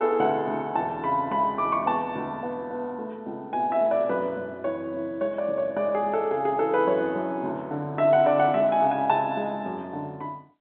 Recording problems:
telephone audio; 170 Hz to 3.6 kHz, G.711

